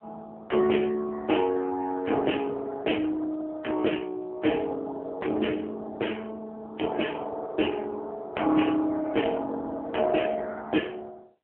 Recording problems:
telephone audio; 240 Hz to 3.2 kHz, AMR-NB

